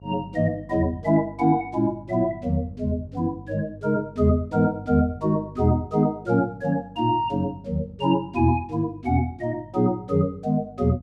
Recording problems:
hum; 50 Hz, harmonics up to 550 Hz, SNR 20 dB

